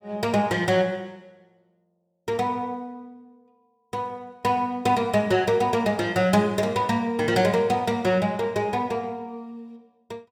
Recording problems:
none

